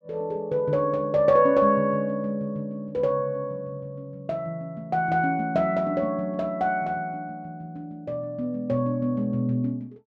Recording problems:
none

